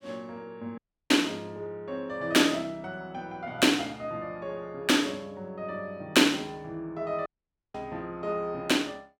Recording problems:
audio cutting out; at 1 s and at 7.5 s

